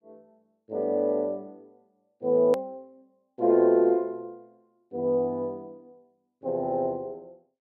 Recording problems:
click at an edit; at 2.5 s

